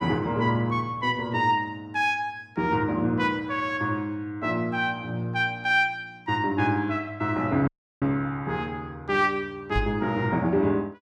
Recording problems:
dropout; at 7.5 s
microphone thump; at 10 s; peak +1 dB vs average level

